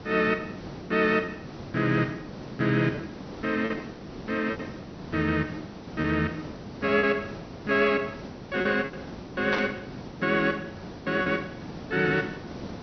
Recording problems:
treble cut off; nothing above 6 kHz
hiss; slope -7 dB per octave, SNR 13 dB
lost packets; 7% of the sound replaced, filled with repeated pitch periods
burst of static; at 9.5 s; peak -1 dB vs average level

